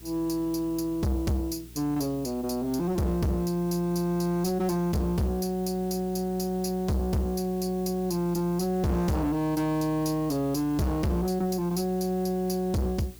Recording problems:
distortion; soft clipping, signal-to-distortion ratio 6 dB
electrical hum; 60 Hz, harmonics up to 420 Hz, SNR 21 dB
background hiss; slope +1 dB per octave, SNR 22 dB

